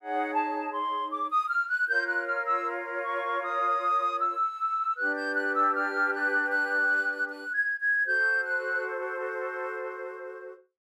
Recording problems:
none

